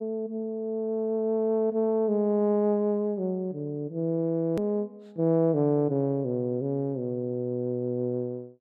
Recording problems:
click at an edit; at 4.5 s

